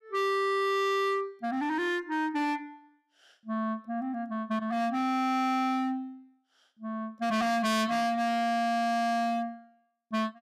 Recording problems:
distortion; hard clipping, signal-to-distortion ratio 6 dB

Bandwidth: 14.5 kHz